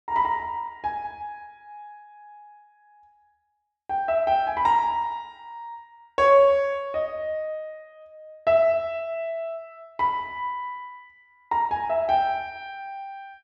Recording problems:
none

